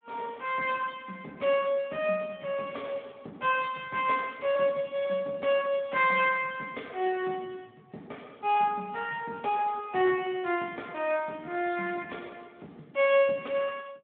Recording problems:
phone line; 190 Hz to 3.6 kHz, Speex

